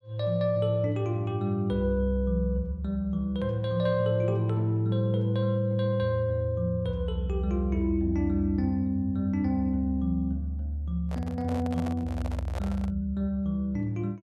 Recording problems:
handling noise; from 11 to 13 s; peak -7 dB vs average level

